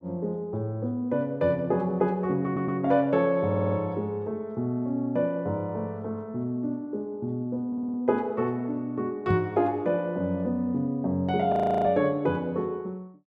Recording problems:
audio stuttering; at 2.5 s, at 3.5 s and at 7.5 s
knock on the microphone; at 9.5 s; peak +3 dB vs average level
audio freezing; at 12 s

